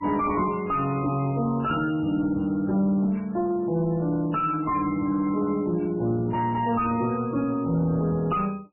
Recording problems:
lossy compression; MP3, log-spectral distance 2 dB, nothing above 2.4 kHz
distortion; soft clipping, signal-to-distortion ratio 9 dB

